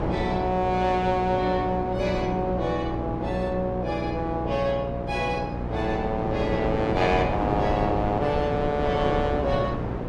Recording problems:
mains hum; 60 Hz, harmonics up to 1.1 kHz, SNR 7 dB
wind on the microphone; below 610 Hz, SNR 5 dB

